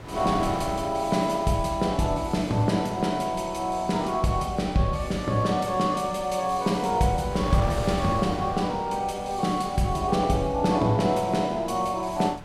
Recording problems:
wind noise; below 810 Hz, SNR 14 dB

